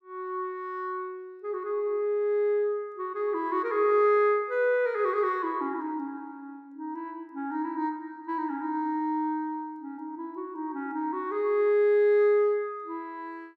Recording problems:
none

